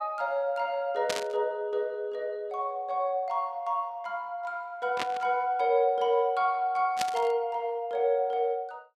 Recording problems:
static burst; at 1 s, at 5 s and at 7 s; peak +2 dB vs average level

